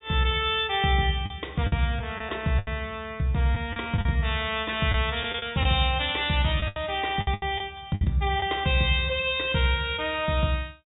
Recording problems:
treble missing; nothing above 4 kHz
packet loss; 7% of the sound replaced, filled with the last packet

